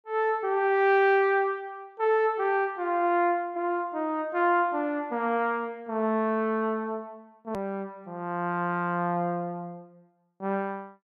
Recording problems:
hard cut with a click; at 7.5 s

